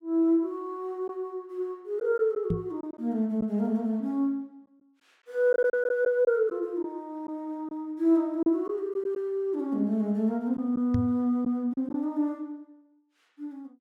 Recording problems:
lost packets; 3% of the sound replaced, filled with silence
microphone bump; at 2.5 s and at 11 s; peak +3 dB vs average level

